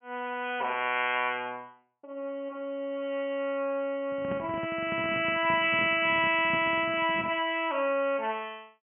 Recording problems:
treble missing; nothing above 3.2 kHz
handling noise; from 4 to 7.5 s; peak -5 dB vs average level

